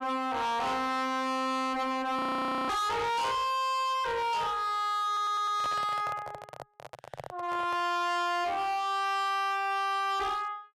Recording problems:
distorted audio; hard clipping, signal-to-distortion ratio 7 dB
frozen audio; at 2 s for 0.5 s
stutter; at 5 s
handling noise; from 5 to 8 s; peak -5 dB vs average level

